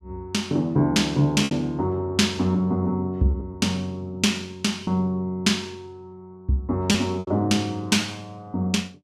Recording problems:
lost packets; 3% of the sound replaced, filled with repeated pitch periods

